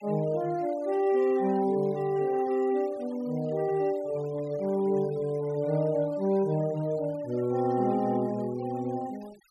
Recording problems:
denoising artefacts; signal-to-artefact ratio 23 dB

